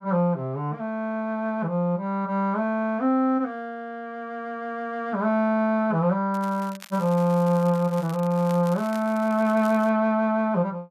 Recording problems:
crackle; from 6.5 to 8 s and from 8 to 10 s; loose cable, SNR 22 dB

